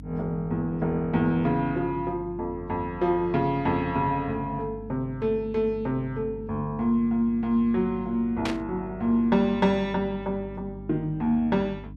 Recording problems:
hum; 50 Hz, harmonics up to 300 Hz, SNR 16 dB
static burst; at 8.5 s; peak 0 dB vs average level

